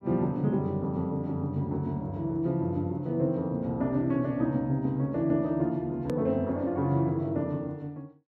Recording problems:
edit click; at 6 s

